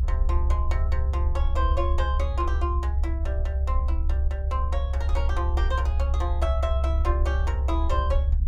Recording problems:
low-frequency rumble; below 70 Hz, strongest tone 68 Hz, SNR -7 dB

